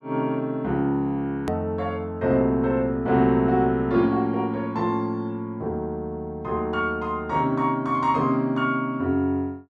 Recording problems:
edit click; at 1.5 s

